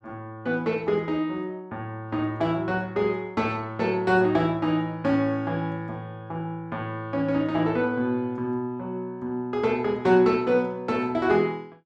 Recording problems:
none

